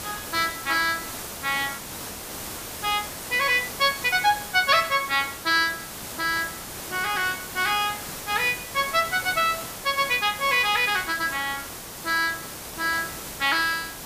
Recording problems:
hiss; slope -3 dB per octave, SNR 10 dB
audio freezing; at 2 s for 1 s

